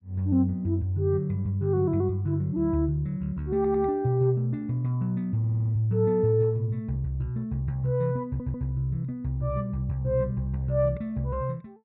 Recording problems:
audio stuttering; at 3.5 s, at 5.5 s and at 8.5 s

